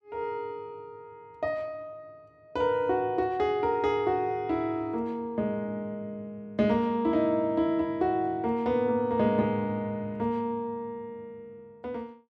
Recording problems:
none

